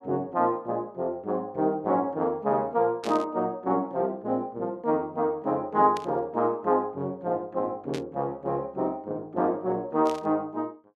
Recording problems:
static burst; 4 times, first at 3 s; peak -8 dB vs average level

